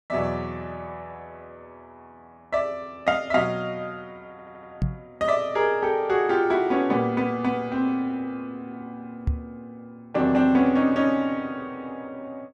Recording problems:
stutter; at 4.5 s
knock on the microphone; at 5 s and at 9.5 s; peak +3 dB vs average level

